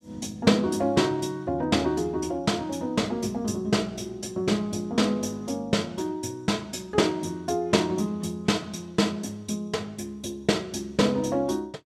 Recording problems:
none

